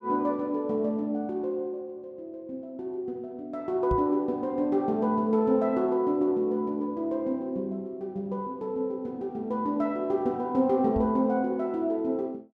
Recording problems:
microphone thump; at 4 s and at 11 s; peak 0 dB vs average level

